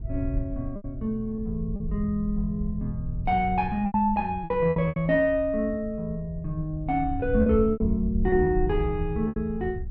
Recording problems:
wind on the microphone; below 84 Hz, SNR 8 dB
lost packets; 7% of the sound replaced, filled with repeated pitch periods

